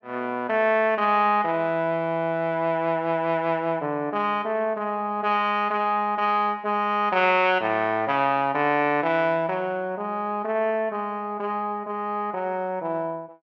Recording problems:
low-pass filter; nothing above 8 kHz

